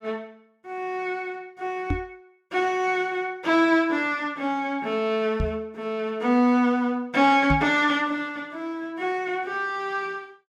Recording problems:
microphone bump; at 2 s, at 5.5 s and at 7.5 s; peak +3 dB vs average level

